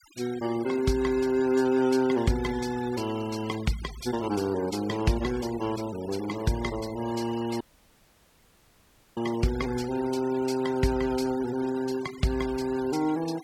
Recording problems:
denoising artefacts; signal-to-artefact ratio 17 dB
dropout; at 7.5 s for 1.5 s

